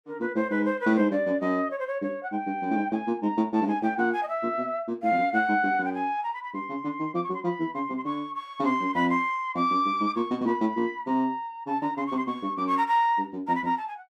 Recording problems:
none

